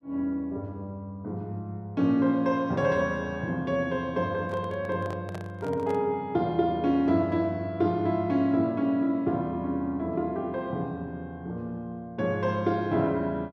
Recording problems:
handling noise; from 4.5 to 6 s; peak -8 dB vs average level

